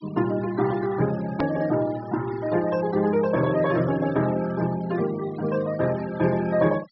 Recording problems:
low-pass filter; nothing above 5.5 kHz
denoising artefacts; signal-to-artefact ratio 18 dB
click at an edit; at 1.5 s

